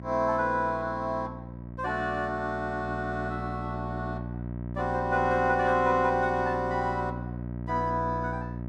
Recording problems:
hum; 60 Hz, harmonics up to 960 Hz, SNR 9 dB

